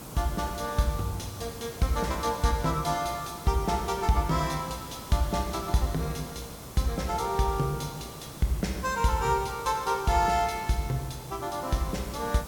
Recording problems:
background hiss; SNR 13 dB

